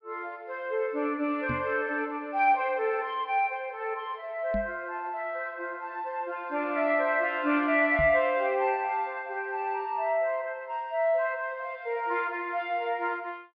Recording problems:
treble cut off; nothing above 5.5 kHz
microphone thump; at 1.5 s, at 4.5 s and at 8 s; peak -2 dB vs average level

